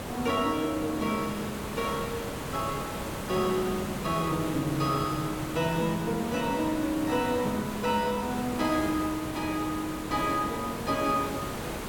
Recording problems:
background hiss; slope -6 dB per octave, SNR 6 dB

